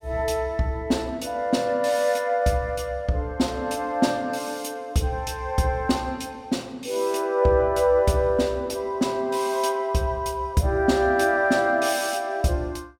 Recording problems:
none

